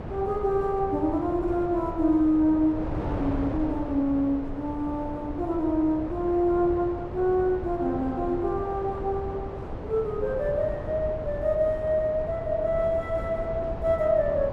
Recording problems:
wind noise; below 520 Hz, SNR 9 dB

